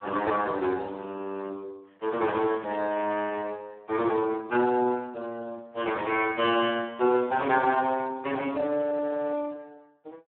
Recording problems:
phone line; 280 Hz to 3.8 kHz, Speex

